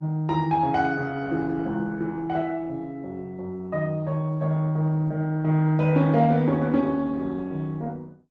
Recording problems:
lossy codec; Opus, log-spectral distance 2 dB

